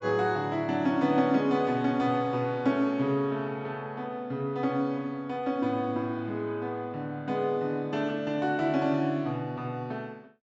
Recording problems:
treble cut off; nothing above 7.9 kHz

